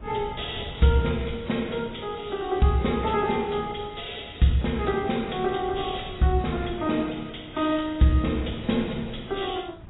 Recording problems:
lossy codec; AAC, log-spectral distance 9 dB, nothing above 3.8 kHz
wind on the microphone; below 210 Hz, SNR 18 dB

